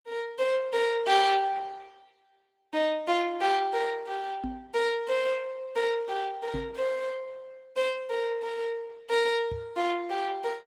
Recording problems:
lossy compression; Opus, log-spectral distance 3 dB, nothing above 20.1 kHz
microphone bump; at 4.5 s, at 6.5 s and at 9.5 s; peak -2 dB vs average level

